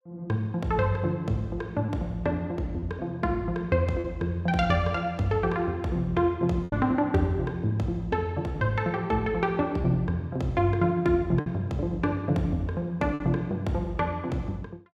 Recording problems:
lost packets; 2% of the sound replaced, filled with repeated pitch periods

